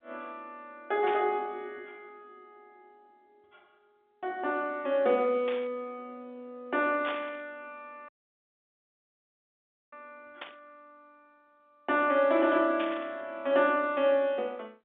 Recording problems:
telephone audio; 220 Hz to 3.6 kHz, G.711
burst of static; 5 times, first at 1 s; peak -5 dB vs average level
audio cutting out; at 8 s for 2 s

